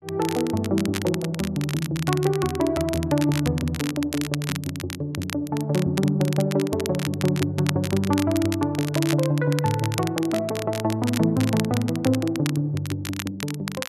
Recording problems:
crackle; vinyl, SNR 10 dB

